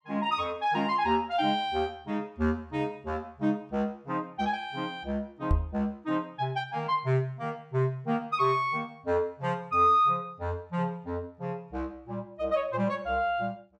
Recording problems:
microphone thump; at 5.5 s; peak +6 dB vs average level

